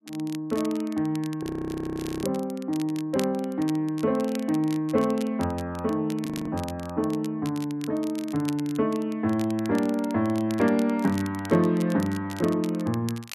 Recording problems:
crackling; vinyl, SNR 18 dB
frozen audio; at 1.5 s for 1 s and at 6.5 s

